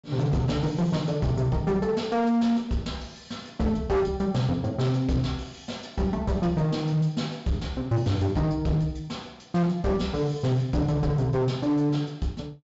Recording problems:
low-pass filter; nothing above 8 kHz
distorted audio; hard clipping, signal-to-distortion ratio 10 dB

